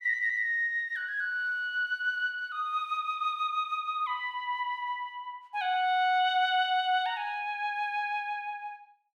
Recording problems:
none

